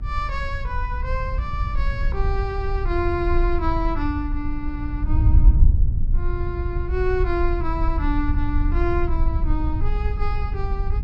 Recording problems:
electrical hum; 60 Hz, harmonics up to 1.3 kHz, SNR 17 dB
wind noise; below 66 Hz, SNR -3 dB

